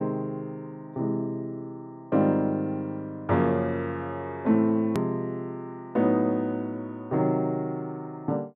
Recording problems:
edit click; at 5 s

